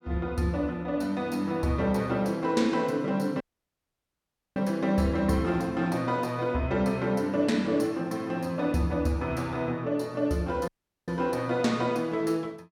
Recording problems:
audio cutting out; at 3.5 s for 1 s and at 11 s

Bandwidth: 17 kHz